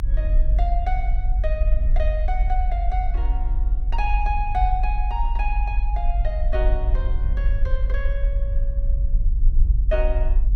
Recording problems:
low-frequency rumble; below 46 Hz, strongest tone 26 Hz, SNR -7 dB

